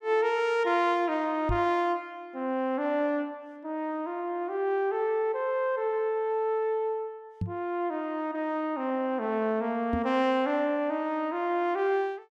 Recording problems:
microphone thump; at 1.5 s, at 7.5 s and at 10 s; peak +1 dB vs average level

